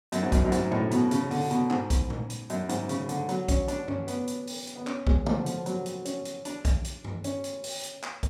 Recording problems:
none

